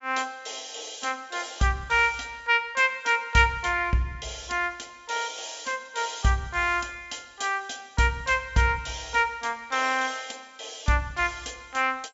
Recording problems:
treble cut off; nothing above 7.6 kHz

